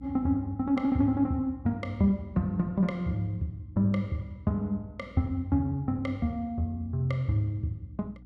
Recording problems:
mains hum; 60 Hz, harmonics up to 300 Hz, SNR 23 dB

